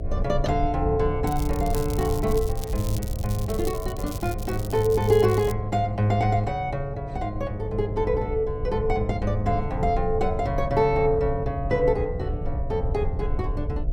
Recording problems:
hum; 60 Hz, harmonics up to 720 Hz, SNR 15 dB
low-frequency rumble; below 88 Hz, SNR 7 dB
crackle; from 1.5 to 5.5 s; loose cable, SNR 15 dB

